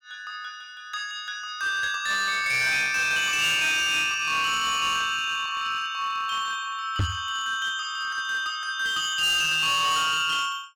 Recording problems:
distortion; hard clipping, uneven, signal-to-distortion ratio 11 dB
microphone bump; at 7 s; peak +2 dB vs average level

